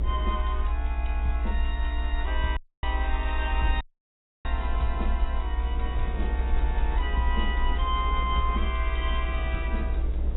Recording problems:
lossy codec; AAC, log-spectral distance 2 dB, nothing above 3.2 kHz
hiss; SNR 25 dB
low-frequency rumble; below 62 Hz, SNR -4 dB
wind on the microphone; below 480 Hz, SNR 10 dB
dropout; at 2.5 s and at 4 s for 0.5 s

